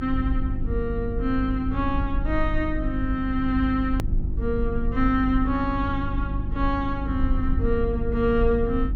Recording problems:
treble missing; nothing above 7.3 kHz
electrical hum; 50 Hz, harmonics up to 350 Hz, SNR 6 dB
low-frequency rumble; below 62 Hz, strongest tone 22 Hz, SNR 5 dB
edit click; at 4 s

